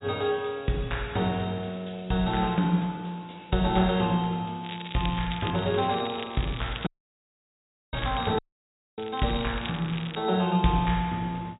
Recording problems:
low-pass filter; nothing above 4 kHz
crackling; from 4.5 to 7 s and from 8 to 10 s; loose cable, SNR 13 dB
audio cutting out; at 7 s for 1 s and at 8.5 s for 0.5 s

